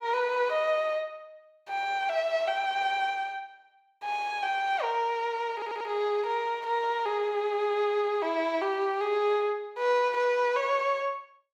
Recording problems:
audio stuttering; at 5.5 s

